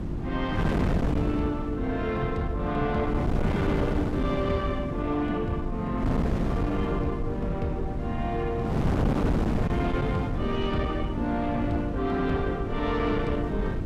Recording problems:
distortion; soft clipping, signal-to-distortion ratio 11 dB
electrical hum; 50 Hz, harmonics up to 350 Hz, SNR 8 dB
rumble; below 92 Hz, SNR 9 dB
wind on the microphone; below 330 Hz, SNR 1 dB

